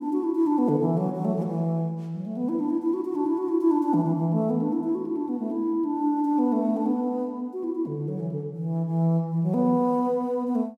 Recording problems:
none

